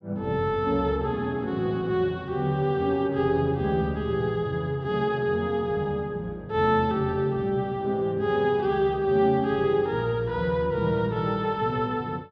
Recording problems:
none

